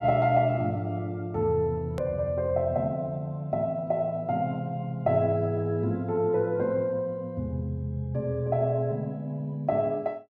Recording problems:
hard cut with a click; at 2 s

